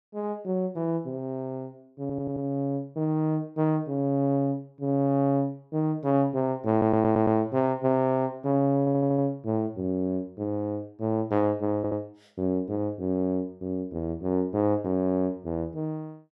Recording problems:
audio stuttering; 4 times, first at 2 s

